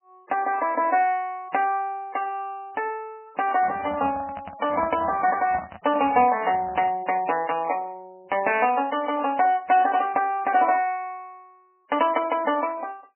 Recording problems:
lossy compression; MP3, log-spectral distance 4 dB, nothing above 2.7 kHz
handling noise; from 3.5 to 7 s; peak -4 dB vs average level

